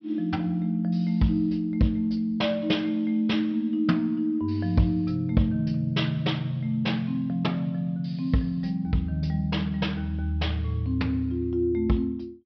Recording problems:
low-pass filter; nothing above 5.5 kHz

